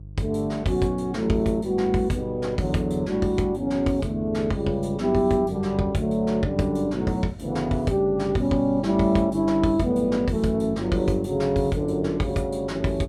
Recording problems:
electrical hum; 50 Hz, harmonics up to 350 Hz, SNR 18 dB

